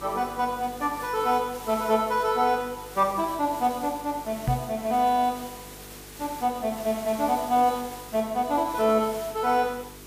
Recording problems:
hum; 50 Hz, harmonics up to 450 Hz, SNR 22 dB
hiss; slope -2 dB per octave, SNR 16 dB
microphone bump; at 4.5 s; peak +3 dB vs average level

